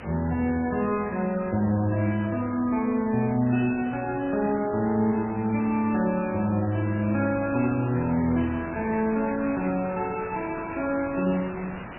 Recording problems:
lossy codec; MP3, log-spectral distance 5 dB, nothing above 2.7 kHz
background hiss; SNR 14 dB

